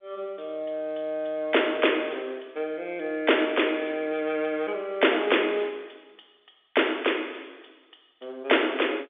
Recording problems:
telephone audio; 220 Hz to 3.6 kHz, G.711

